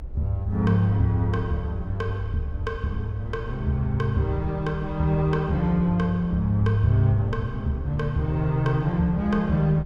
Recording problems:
rumble; below 64 Hz, SNR 14 dB

